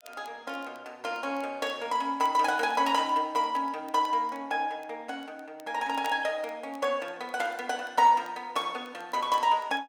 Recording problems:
crackling; vinyl, SNR 29 dB

